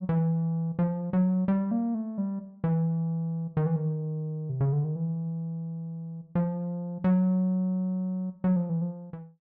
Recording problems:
none

